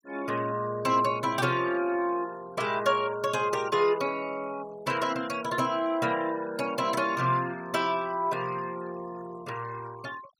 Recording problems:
noise reduction artefacts; signal-to-artefact ratio 20 dB

